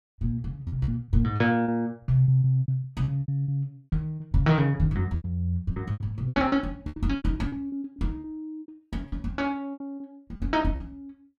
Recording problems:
packet loss; 17% of the sound replaced, filled with repeated pitch periods

